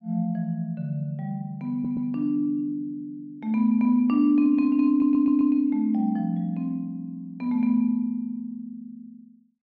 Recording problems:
stutter; at 1.5 s and at 5 s

